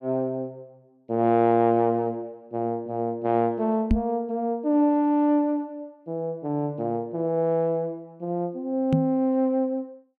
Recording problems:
microphone thump; at 4 s and at 9 s; peak +7 dB vs average level

